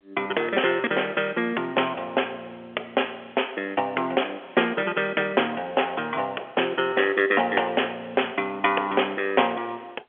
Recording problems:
telephone audio; 320 Hz to 3.4 kHz, G.711

